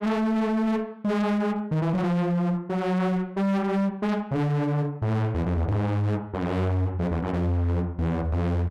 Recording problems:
distorted audio; hard clipping, signal-to-distortion ratio 6 dB

